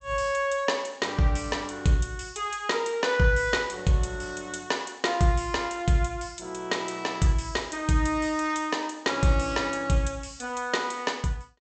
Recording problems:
treble cut off; nothing above 8 kHz

